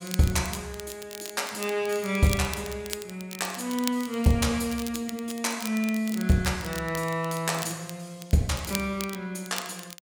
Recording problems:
crackling; vinyl, SNR 12 dB

